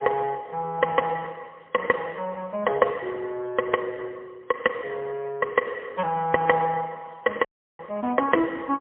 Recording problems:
phone line; 260 Hz to 2.6 kHz, AMR-NB, then MP3
audio cutting out; at 7.5 s

